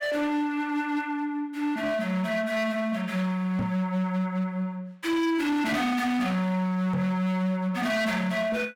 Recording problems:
distorted audio; hard clipping, signal-to-distortion ratio 8 dB
microphone thump; at 3.5 s and at 7 s; peak 0 dB vs average level

